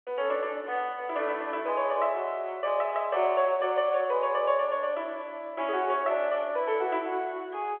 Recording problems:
phone line; 320 Hz to 3.3 kHz, G.711

